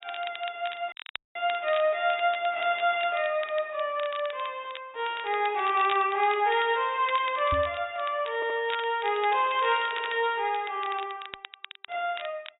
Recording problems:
low-pass filter; nothing above 4 kHz
crackling; vinyl, SNR 15 dB
audio cutting out; at 1 s
microphone thump; at 7.5 s; peak -3 dB vs average level
stutter; at 8.5 s and at 10 s

